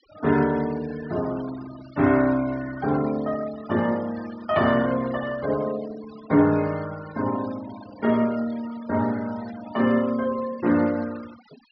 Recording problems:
low-pass filter; nothing above 5.5 kHz
denoising artefacts; signal-to-artefact ratio 19 dB

